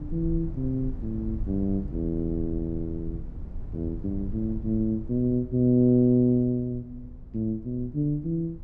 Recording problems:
rumble; below 86 Hz, SNR 12 dB

